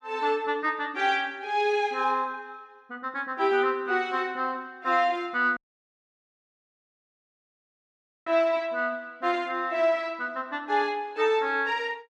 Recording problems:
audio cutting out; at 5.5 s for 2.5 s

